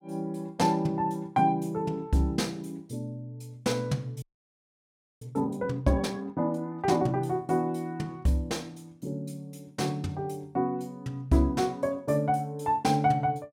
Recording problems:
frozen audio; at 4 s for 1 s

